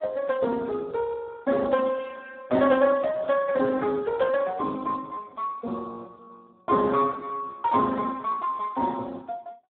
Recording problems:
phone line; 170 Hz to 2.1 kHz, Speex

